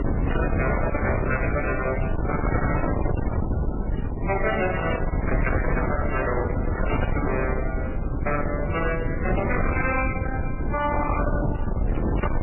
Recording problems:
lossy codec; MP3, then MP3, log-spectral distance 5 dB, nothing above 2.6 kHz
distorted audio; soft clipping, signal-to-distortion ratio 7 dB
wind on the microphone; below 370 Hz, SNR 0 dB

